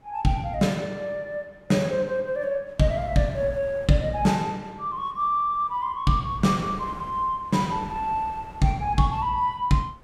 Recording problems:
wind noise; below 690 Hz, SNR 21 dB

